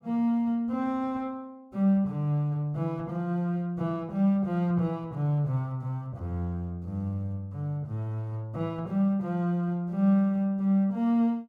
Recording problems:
none

